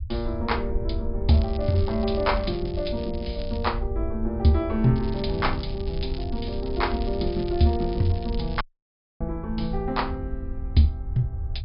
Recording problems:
treble cut off; nothing above 5.5 kHz
rumble; below 74 Hz, SNR 7 dB
crackling; from 1.5 to 3.5 s and from 5 to 8.5 s; loose cable, SNR 19 dB
dropout; at 8.5 s for 0.5 s

